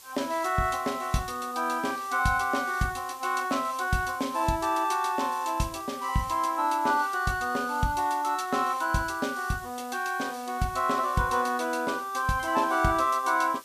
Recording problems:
hiss; SNR 20 dB

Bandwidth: 14.5 kHz